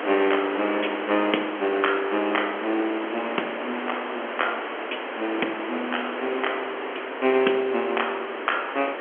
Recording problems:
telephone audio; 260 Hz to 3.3 kHz, G.711
hiss; SNR 5 dB

